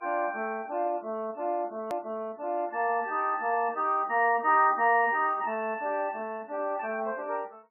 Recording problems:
lossy compression; MP3, log-spectral distance 2 dB, nothing above 2.7 kHz
click at an edit; at 2 s

